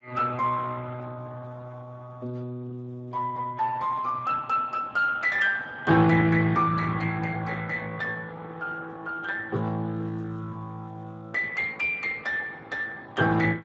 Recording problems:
lossy codec; Speex, log-spectral distance 3 dB, nothing above 7.3 kHz

